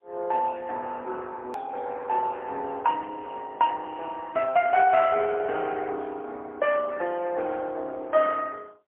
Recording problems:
telephone audio; 320 Hz to 3.3 kHz, AMR-NB, then MP3
hard cut with a click; at 1.5 s

